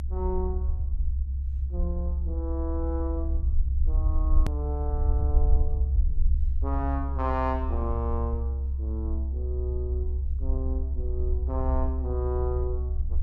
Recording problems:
low-frequency rumble; below 68 Hz, SNR -6 dB
edit click; at 4.5 s

